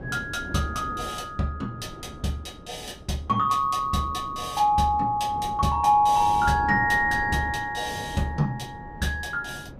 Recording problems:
wind noise; below 370 Hz, SNR 16 dB

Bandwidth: 15.5 kHz